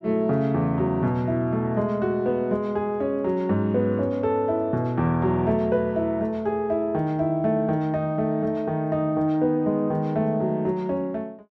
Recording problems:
none

